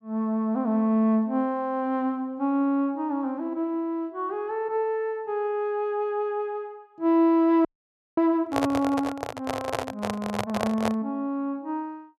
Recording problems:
audio freezing; at 7.5 s for 0.5 s
handling noise; from 8.5 to 11 s; peak +4 dB vs average level

